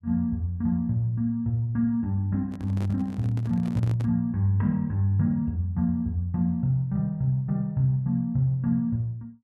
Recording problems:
microphone handling noise; from 2.5 to 4 s; peak -8 dB vs average level

